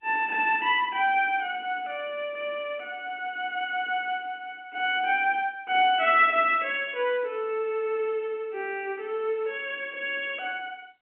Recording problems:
phone line; 240 Hz to 3.2 kHz, G.711

